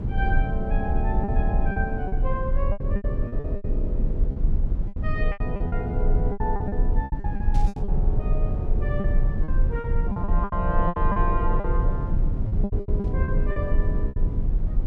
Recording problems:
low-frequency rumble; below 70 Hz, strongest tone 26 Hz, SNR -6 dB
lost packets; 13% of the sound replaced, filled with repeated pitch periods
burst of static; at 7.5 s and at 13 s; peak -10 dB vs average level

